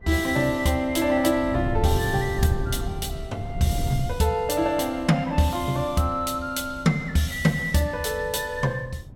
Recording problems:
wind on the microphone; below 130 Hz, SNR 10 dB

